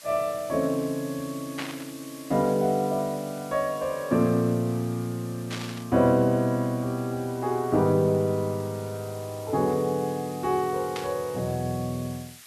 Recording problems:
hiss; slope +3 dB per octave, SNR 19 dB
burst of static; at 1.5 s, at 5.5 s and at 11 s; peak -3 dB vs average level

